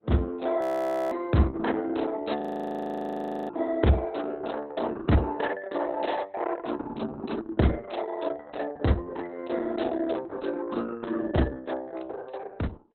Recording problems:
lossy compression; Opus, log-spectral distance 5 dB, nothing above 16 kHz
audio freezing; at 0.5 s for 0.5 s and at 2.5 s for 1 s

